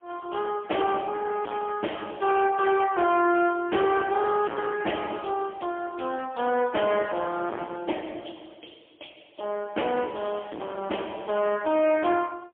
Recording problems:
phone line; 240 Hz to 3.4 kHz, AMR-NB, then MP3
distorted audio; hard clipping, signal-to-distortion ratio 6 dB

